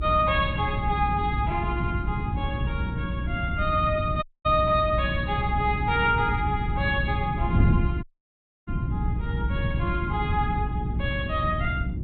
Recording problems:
treble missing; nothing above 4 kHz
electrical hum; 60 Hz, harmonics up to 360 Hz, SNR 7 dB
wind noise; below 160 Hz, SNR 3 dB
audio cutting out; at 4 s and at 8 s for 0.5 s

